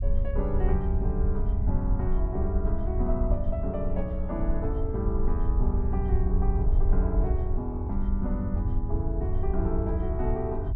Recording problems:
low-frequency rumble; below 72 Hz, SNR -3 dB

